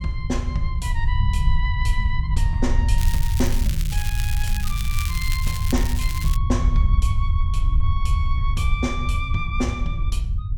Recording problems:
rumble; below 76 Hz, SNR -5 dB
crackling; from 3 to 6.5 s; loose cable, SNR 5 dB

